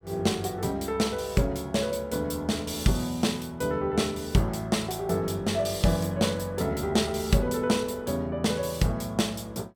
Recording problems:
none

